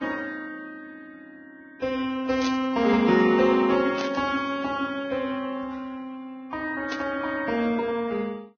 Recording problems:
lossy compression; Vorbis, log-spectral distance 3 dB, nothing above 5.8 kHz
burst of static; at 2.5 s, at 4 s and at 7 s; peak -3 dB vs average level

